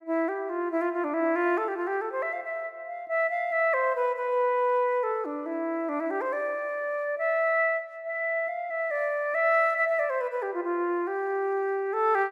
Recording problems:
none

